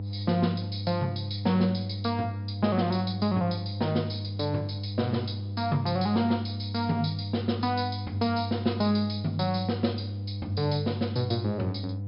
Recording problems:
treble missing; nothing above 5.5 kHz
hum; 50 Hz, harmonics up to 500 Hz, SNR 5 dB

